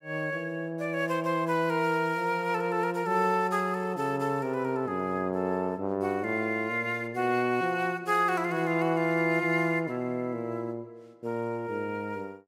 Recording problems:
none

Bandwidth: 16 kHz